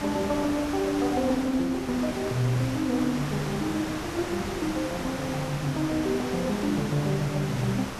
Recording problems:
hiss; slope -4 dB per octave, SNR 6 dB

